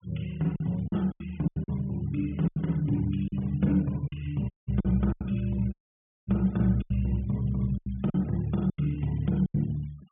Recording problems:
treble missing; nothing above 3.5 kHz
denoising artefacts; signal-to-artefact ratio 27 dB
packet loss; 10% of the sound replaced, filled with silence
dropout; at 4.5 s and at 5.5 s for 0.5 s

